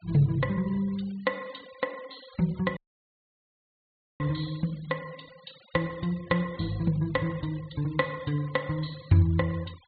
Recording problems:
treble cut off; nothing above 4.4 kHz
noise reduction artefacts; signal-to-artefact ratio 22 dB
dropout; at 3 s for 1.5 s

